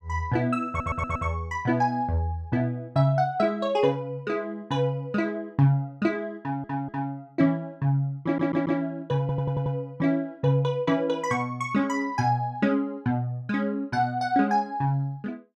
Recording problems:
stutter; 4 times, first at 0.5 s

